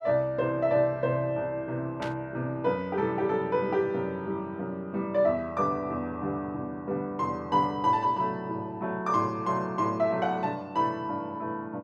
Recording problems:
static burst; at 2 s; peak -6 dB vs average level

